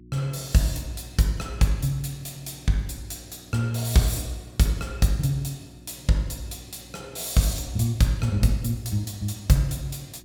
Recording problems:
electrical hum; 60 Hz, harmonics up to 360 Hz, SNR 24 dB

